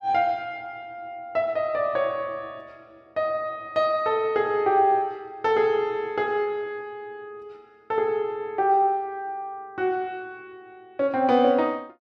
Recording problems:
none

